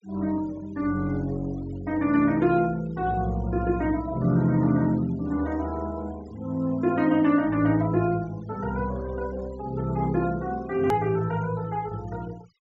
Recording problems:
treble missing; nothing above 8 kHz
denoising artefacts; signal-to-artefact ratio 24 dB
edit click; at 11 s

